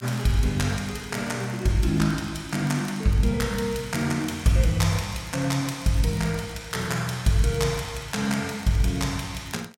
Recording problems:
crackle; vinyl, SNR 25 dB

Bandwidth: 16.5 kHz